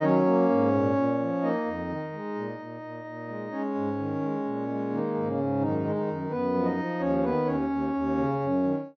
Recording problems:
treble missing; nothing above 6.2 kHz

